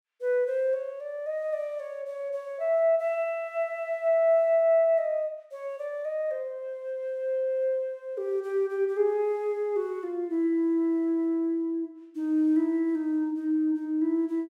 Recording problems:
none

